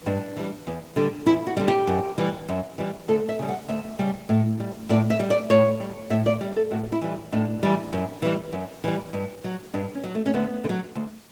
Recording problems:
lossy codec; Opus, log-spectral distance 4 dB, nothing above 19 kHz
background hiss; slope -3 dB per octave, SNR 24 dB

